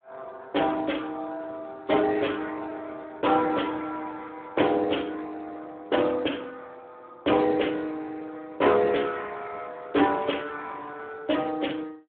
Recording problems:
telephone audio; 260 Hz to 3.4 kHz, Speex

